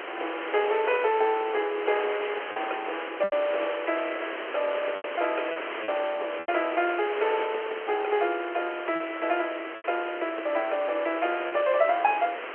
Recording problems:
telephone audio; 340 Hz to 3.2 kHz, G.711
hiss; SNR 7 dB
lost packets; 4% of the sound replaced, filled with repeated pitch periods

